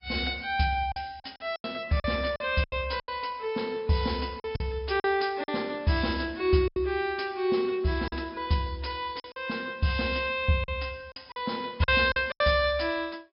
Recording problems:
treble cut off; nothing above 5.2 kHz
lossy codec; Vorbis, log-spectral distance 4 dB
lost packets; 8% of the sound replaced, filled with silence

